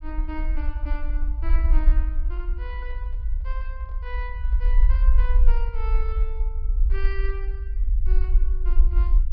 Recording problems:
low-pass filter; nothing above 5.5 kHz
rumble; below 46 Hz, SNR -14 dB
microphone handling noise; from 2.5 to 6.5 s; peak -11 dB vs average level

